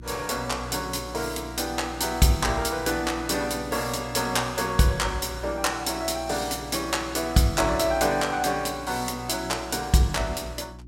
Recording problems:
hum; 60 Hz, harmonics up to 360 Hz, SNR 17 dB

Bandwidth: 16.5 kHz